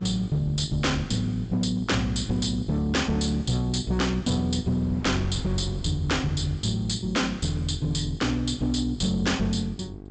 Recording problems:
treble missing; nothing above 8 kHz
distortion; hard clipping, signal-to-distortion ratio 12 dB
hum; 50 Hz, harmonics up to 800 Hz, SNR 17 dB
wind noise; below 200 Hz, SNR 17 dB

